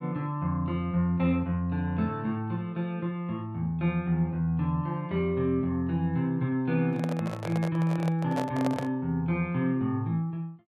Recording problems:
handling noise; from 7 to 9 s; peak 0 dB vs average level

